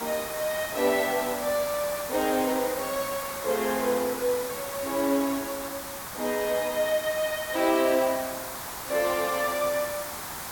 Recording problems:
background hiss; SNR 7 dB

